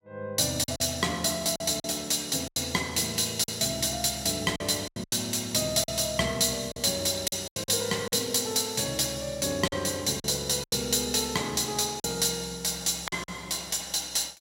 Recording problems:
lost packets; 7% of the sound replaced, filled with silence

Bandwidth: 16 kHz